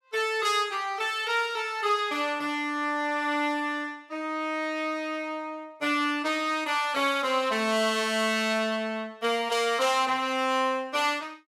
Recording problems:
none

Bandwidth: 16 kHz